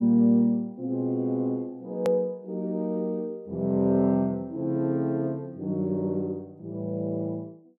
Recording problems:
edit click; at 2 s

